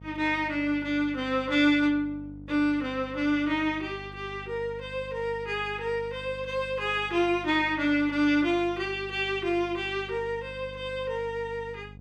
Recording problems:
hum; 50 Hz, harmonics up to 550 Hz, SNR 18 dB

